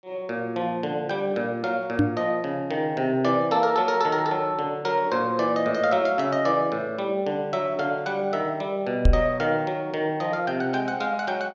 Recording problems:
knock on the microphone; at 2 s and at 9 s; peak +9 dB vs average level

